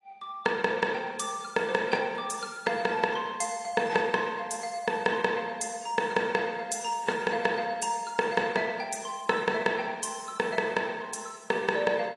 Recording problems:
codec artefacts; AAC, log-spectral distance 4 dB, nothing above 10.7 kHz

